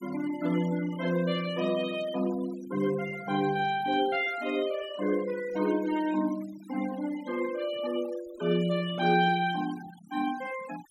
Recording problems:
denoising artefacts; signal-to-artefact ratio 16 dB

